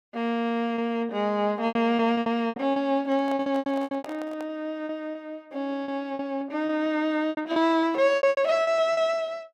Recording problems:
lost packets; 14% of the sound replaced, filled with repeated pitch periods
handling noise; from 3 to 4.5 s; peak -10 dB vs average level

